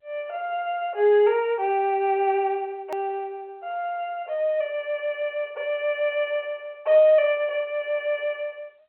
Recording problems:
phone line; 320 Hz to 3.3 kHz, G.711
click at an edit; at 3 s

